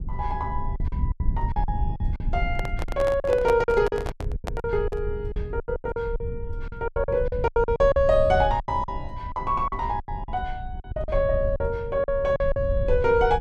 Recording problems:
rumble; below 84 Hz, SNR 7 dB
packet loss; 15% of the sound replaced, filled with silence
handling noise; from 2.5 to 5 s; peak -1 dB vs average level

